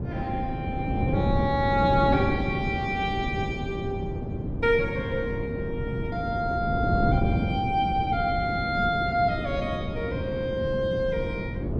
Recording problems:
wind on the microphone; below 290 Hz, SNR 2 dB

